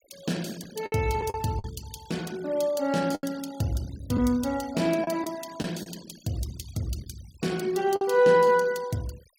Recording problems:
noise reduction artefacts; signal-to-artefact ratio 20 dB
lost packets; 5% of the sound replaced, filled with the last packet

